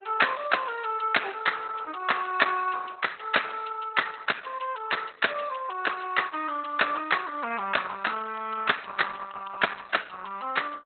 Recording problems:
lossy compression; Opus, log-spectral distance 7 dB, nothing above 4 kHz

